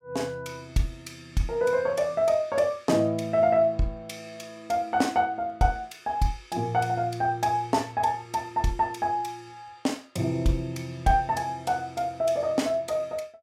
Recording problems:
none

